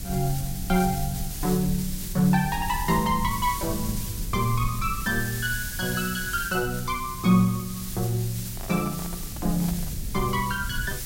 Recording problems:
background hiss; slope +2 dB per octave, SNR 9 dB
low-frequency rumble; below 88 Hz, SNR 11 dB
microphone handling noise; from 8.5 to 10 s; peak -10 dB vs average level

